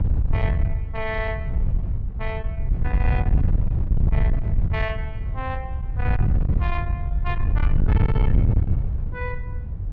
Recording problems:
treble cut off; nothing above 8 kHz
distorted audio; soft clipping, signal-to-distortion ratio 7 dB
low-frequency rumble; below 100 Hz, SNR 7 dB
wind noise; below 110 Hz, SNR -8 dB

